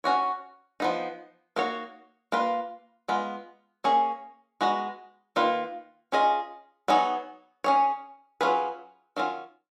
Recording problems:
none

